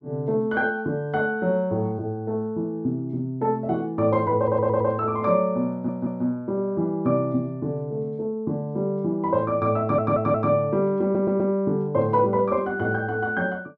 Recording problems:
audio stuttering; 4 times, first at 4.5 s

